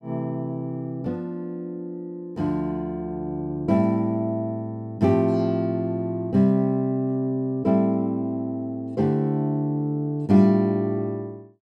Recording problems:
none

